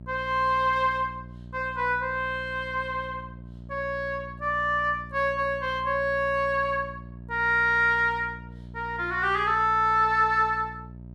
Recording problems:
electrical hum; 60 Hz, harmonics up to 660 Hz, SNR 17 dB

